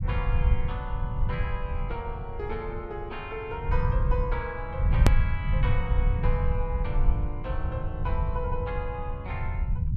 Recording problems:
low-frequency rumble; below 92 Hz, SNR -6 dB
hard cut with a click; at 5 s

